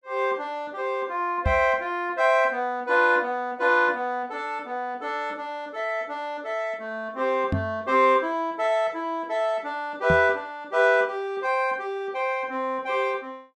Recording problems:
knock on the microphone; at 1.5 s, at 7.5 s and at 10 s; peak +3 dB vs average level

